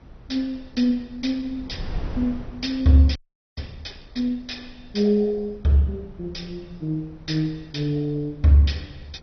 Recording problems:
codec artefacts; MP2, log-spectral distance 3 dB, nothing above 5.5 kHz
wind on the microphone; below 140 Hz, SNR 18 dB
frozen audio; at 3 s

